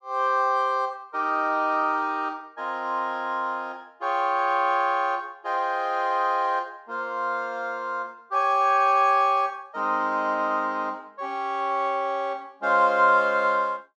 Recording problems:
none

